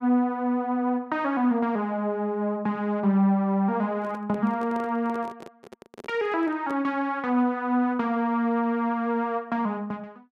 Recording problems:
handling noise; from 4 to 7 s; peak -10 dB vs average level

